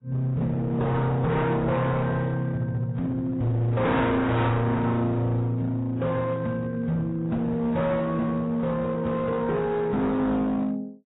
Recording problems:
lossy codec; AAC, then AAC, log-spectral distance 2 dB, nothing above 3.8 kHz
distorted audio; hard clipping, signal-to-distortion ratio 6 dB

